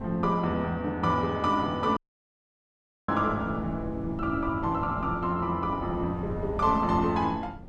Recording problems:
wind noise; below 210 Hz, SNR 13 dB
audio cutting out; at 2 s for 1 s

